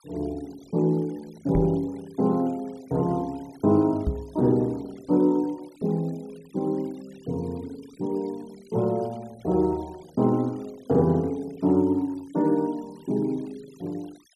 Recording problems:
denoising artefacts; signal-to-artefact ratio 27 dB
microphone thump; at 1.5 s and at 4 s; peak +3 dB vs average level

